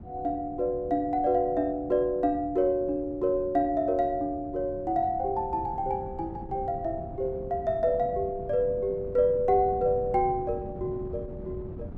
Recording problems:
wind noise; below 240 Hz, SNR 15 dB

